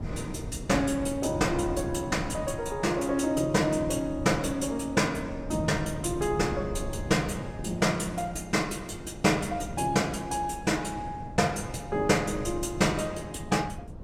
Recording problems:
wind on the microphone; below 240 Hz, SNR 11 dB

